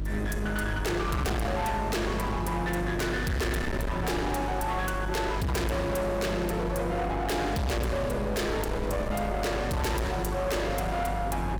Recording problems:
distortion; hard clipping, signal-to-distortion ratio 6 dB
hum; 50 Hz, harmonics up to 700 Hz, SNR 5 dB
wind on the microphone; below 400 Hz, SNR 13 dB

